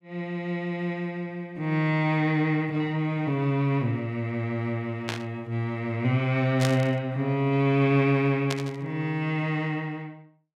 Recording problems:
static burst; at 5 s, at 6.5 s and at 8.5 s; peak 0 dB vs average level

